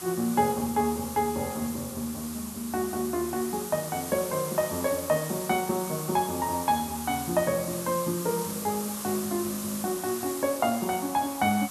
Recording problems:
background hiss; SNR 8 dB

